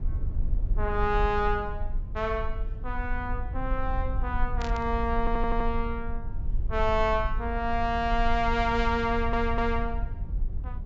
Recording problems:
low-pass filter; nothing above 8 kHz
low-frequency rumble; below 56 Hz, SNR 4 dB
burst of static; at 4.5 s; peak -8 dB vs average level
audio stuttering; at 5 s and at 9 s

